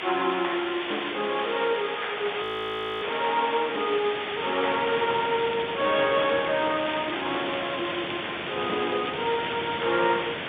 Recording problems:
telephone audio; 300 Hz to 3.6 kHz, G.711
hiss; SNR 5 dB
wind noise; below 650 Hz, SNR 14 dB
frozen audio; at 2.5 s for 0.5 s
crackle; from 5.5 to 9.5 s; loose cable, SNR 14 dB

